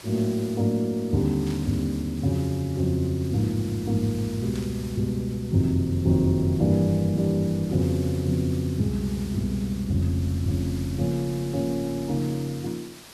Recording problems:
background hiss; slope -1 dB per octave, SNR 19 dB
static burst; at 1.5 s and at 4.5 s; peak -14 dB vs average level

